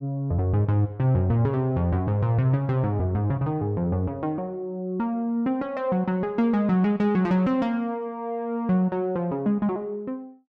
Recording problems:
none

